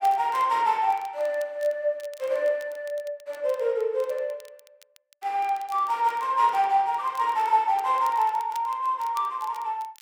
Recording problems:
crackle; vinyl, SNR 26 dB

